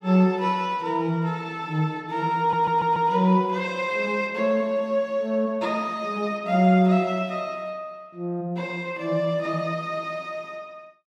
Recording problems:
audio stuttering; at 2.5 s

